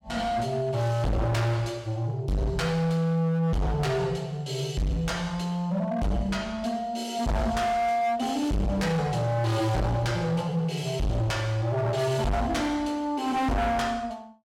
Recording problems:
distorted audio; hard clipping, signal-to-distortion ratio 6 dB

